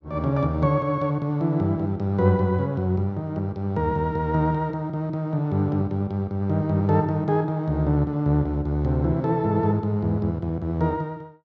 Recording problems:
none

